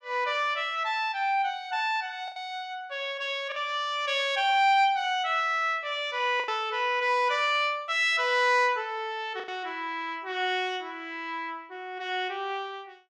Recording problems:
packet loss; 2% of the sound replaced, filled with the last packet

